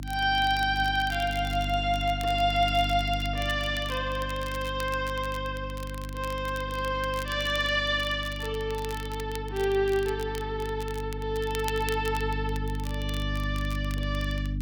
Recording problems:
hum; 50 Hz, harmonics up to 300 Hz, SNR 7 dB
crackle; vinyl, SNR 17 dB

